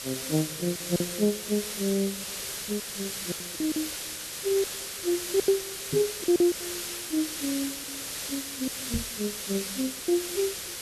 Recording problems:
background hiss; SNR 3 dB
lost packets; 10% of the sound replaced, filled with silence
microphone bump; at 6 s and at 9 s; peak +2 dB vs average level

